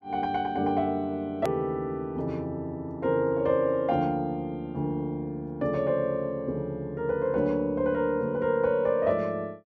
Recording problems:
hard cut with a click; at 1.5 s

